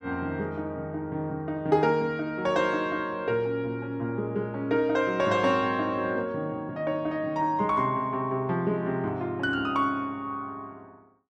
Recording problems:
none

